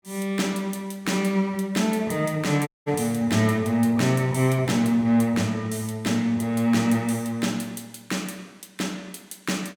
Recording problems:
dropout; at 2.5 s

